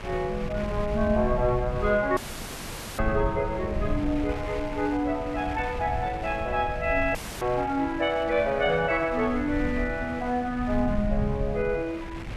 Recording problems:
rumble; below 110 Hz, SNR 9 dB
wind noise; below 2.4 kHz, SNR 15 dB
audio cutting out; at 2 s for 1 s and at 7 s

